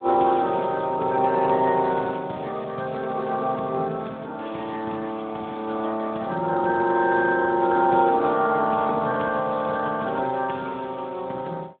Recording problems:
telephone audio; 190 Hz to 3.7 kHz, Speex

